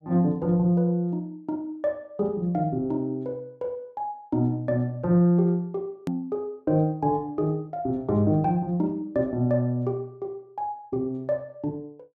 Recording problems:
click at an edit; at 6 s

